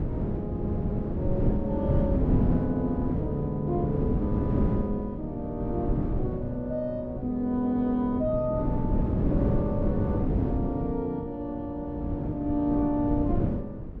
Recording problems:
wind noise; below 250 Hz, SNR 0 dB

